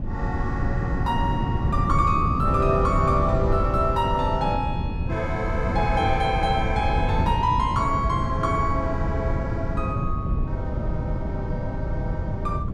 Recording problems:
wind on the microphone; below 160 Hz, SNR 1 dB

